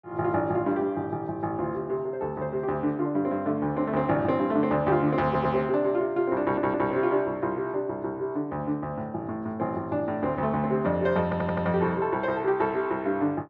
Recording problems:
stutter; at 5.5 s, at 6.5 s and at 11 s

